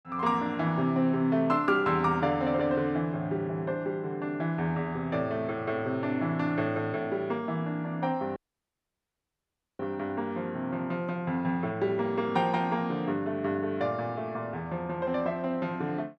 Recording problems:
dropout; at 8.5 s for 1.5 s

